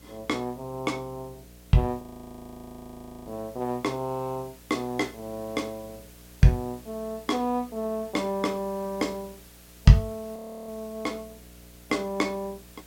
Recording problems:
electrical hum; 60 Hz, harmonics up to 720 Hz, SNR 24 dB
background hiss; slope -1 dB per octave, SNR 23 dB
frozen audio; at 2 s for 1.5 s and at 10 s

